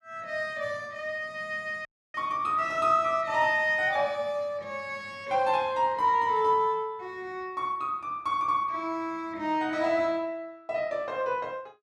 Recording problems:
dropout; at 2 s

